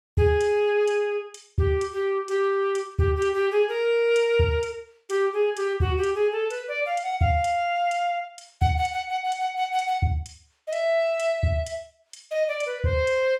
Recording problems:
none

